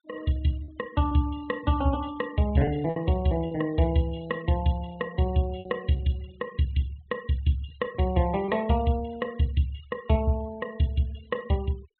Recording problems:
treble missing; nothing above 4 kHz
denoising artefacts; signal-to-artefact ratio 23 dB
lost packets; 3% of the sound replaced, filled with repeated pitch periods

